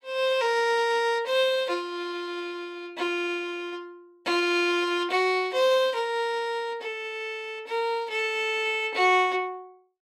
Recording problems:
none

